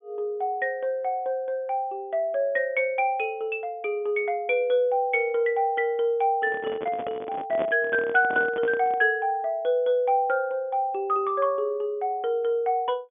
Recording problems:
treble missing; nothing above 3.5 kHz
handling noise; from 6.5 to 9 s; peak -3 dB vs average level

